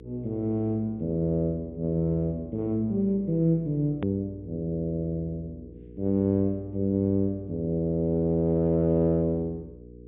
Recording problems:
low-pass filter; nothing above 3.7 kHz
hum; 60 Hz, harmonics up to 480 Hz, SNR 19 dB
edit click; at 4 s

